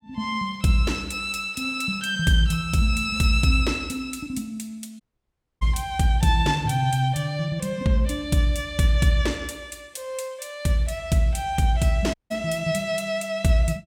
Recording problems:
dropout; at 5 s for 0.5 s and at 12 s

